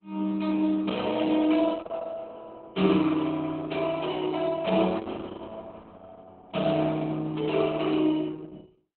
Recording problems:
codec artefacts; Opus, log-spectral distance 4 dB

